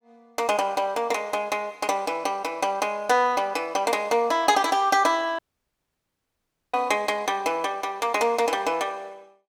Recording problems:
dropout; at 5.5 s for 1.5 s

